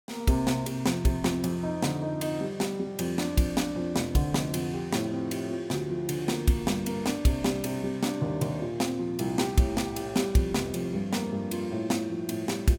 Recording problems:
none

